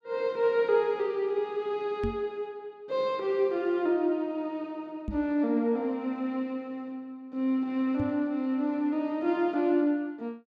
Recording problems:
microphone bump; at 2 s, at 5 s and at 8 s; peak 0 dB vs average level

